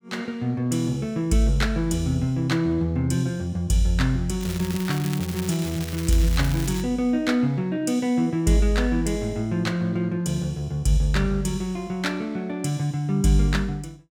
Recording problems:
crackling; from 4.5 to 7 s; loose cable, SNR 12 dB

